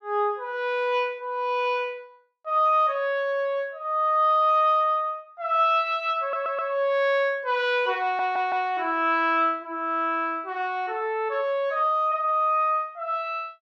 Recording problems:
audio stuttering; at 6 s and at 8 s

